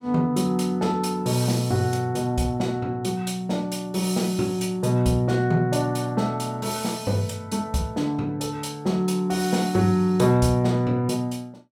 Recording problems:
none

